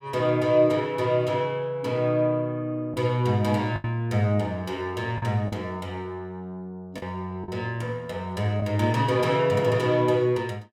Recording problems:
lost packets; 3% of the sound replaced, filled with the last packet

